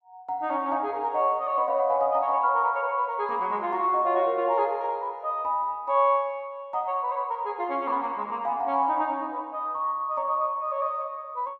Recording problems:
none

